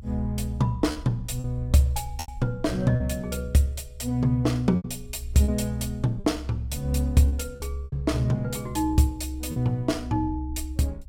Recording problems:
rumble; below 68 Hz, strongest tone 66 Hz, SNR 11 dB
packet loss; 5% of the sound replaced, filled with repeated pitch periods

